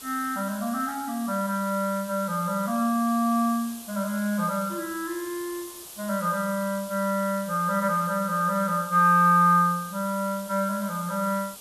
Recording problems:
background hiss; SNR 15 dB

